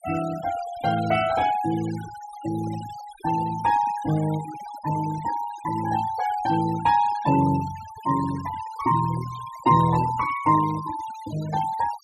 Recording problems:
noise reduction artefacts; signal-to-artefact ratio 16 dB

